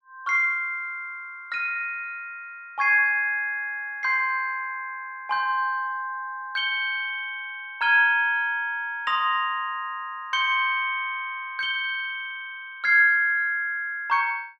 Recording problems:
none

